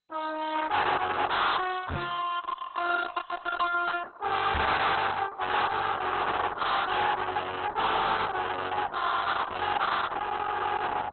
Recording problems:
lossy compression; Opus, then MP2, log-spectral distance 5 dB, nothing above 4 kHz
distorted audio; soft clipping, signal-to-distortion ratio 7 dB
microphone bump; at 2 s and at 4.5 s; peak +1 dB vs average level

